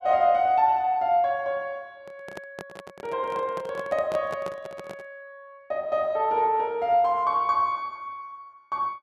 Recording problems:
microphone handling noise; from 2 to 5 s; peak -7 dB vs average level

